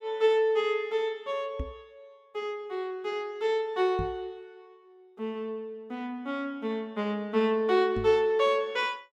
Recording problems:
knock on the microphone; at 1.5 s, at 4 s and at 8 s; peak -2 dB vs average level

